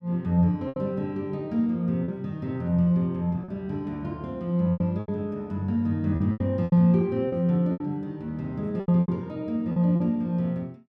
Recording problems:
lost packets; 8% of the sound replaced, filled with repeated pitch periods

